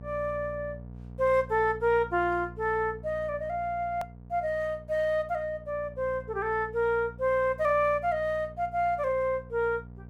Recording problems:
hum; 60 Hz, harmonics up to 720 Hz, SNR 17 dB
hard cut with a click; at 4 s

